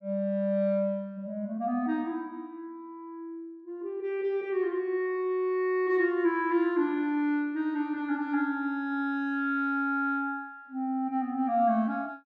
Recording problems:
none

